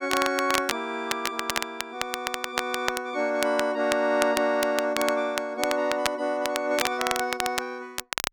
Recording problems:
crackle; vinyl, SNR 5 dB

